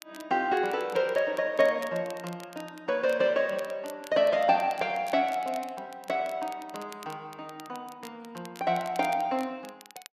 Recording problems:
crackling; vinyl, SNR 22 dB

